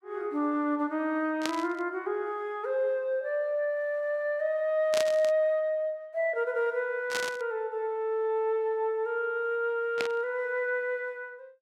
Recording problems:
static burst; 4 times, first at 1.5 s; peak +1 dB vs average level

